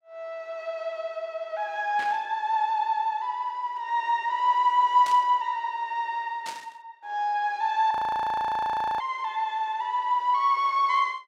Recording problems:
burst of static; at 2 s, at 5 s and at 6.5 s; peak -8 dB vs average level
audio freezing; at 8 s for 1 s

